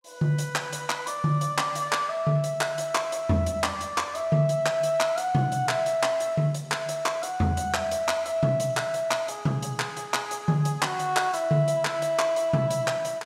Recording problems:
none

